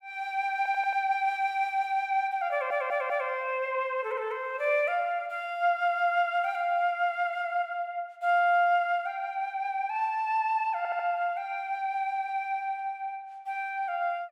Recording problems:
stutter; at 0.5 s, at 2.5 s and at 11 s

